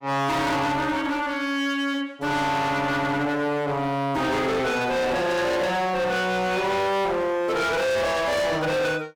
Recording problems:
distorted audio; hard clipping, signal-to-distortion ratio 6 dB

